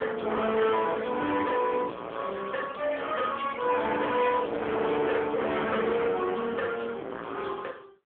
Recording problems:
phone line; 300 Hz to 3.4 kHz, AMR-NB
distorted audio; hard clipping, signal-to-distortion ratio 7 dB

